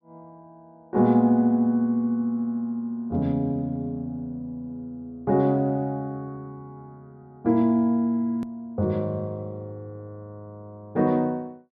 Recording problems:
low-pass filter; nothing above 5.5 kHz
hard cut with a click; at 8.5 s

